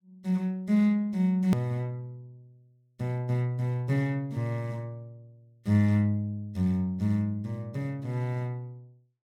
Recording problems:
click at an edit; at 1.5 s

